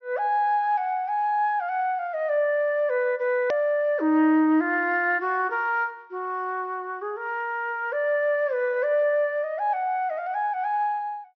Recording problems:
low-pass filter; nothing above 6.1 kHz
click at an edit; at 3.5 s

